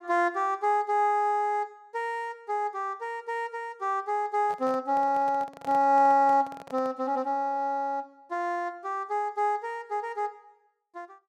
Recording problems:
microphone handling noise; from 4.5 to 7 s; peak -11 dB vs average level

